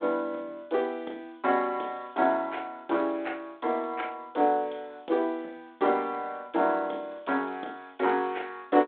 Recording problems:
phone line; 260 Hz to 3.9 kHz, G.726

